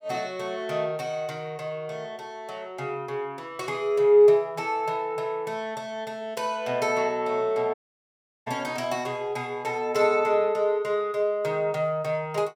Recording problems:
audio cutting out; at 7.5 s for 0.5 s

